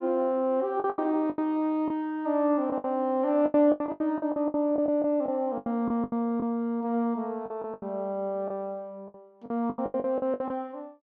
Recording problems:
packet loss; 15% of the sound replaced, filled with the last packet

